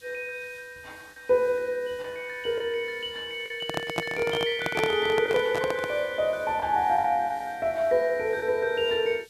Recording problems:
background hiss; SNR 27 dB
lost packets; 3% of the sound replaced, filled with the last packet
microphone handling noise; from 3.5 to 6 s; peak +2 dB vs average level

